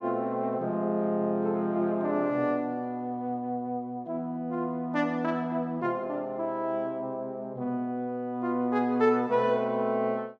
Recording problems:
none

